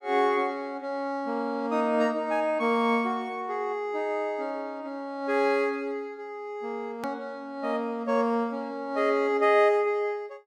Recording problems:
hard cut with a click; at 7 s

